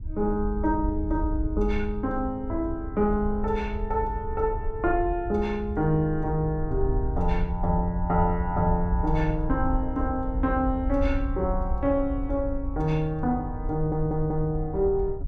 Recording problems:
wind on the microphone; below 70 Hz, SNR 6 dB
stutter; at 14 s

